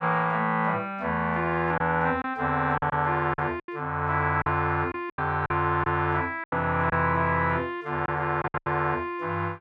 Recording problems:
lost packets; 7% of the sound replaced, filled with silence

